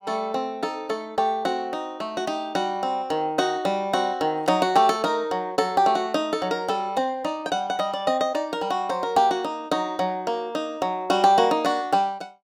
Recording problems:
none

